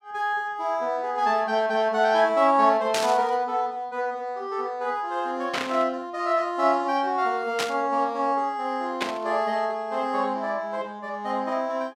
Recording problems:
burst of static; 4 times, first at 3 s; peak +1 dB vs average level

